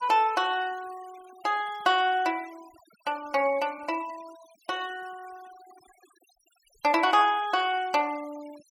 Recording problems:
denoising artefacts; signal-to-artefact ratio 23 dB

